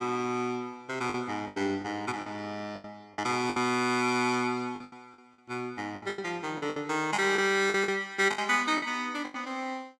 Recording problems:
lost packets; 11% of the sound replaced, filled with the last packet

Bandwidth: 17 kHz